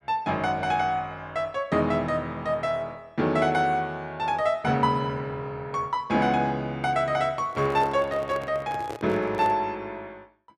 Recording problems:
handling noise; from 7.5 to 9.5 s; peak -6 dB vs average level

